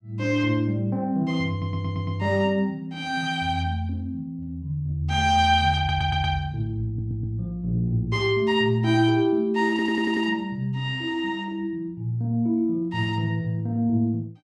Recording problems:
audio stuttering; 4 times, first at 1.5 s

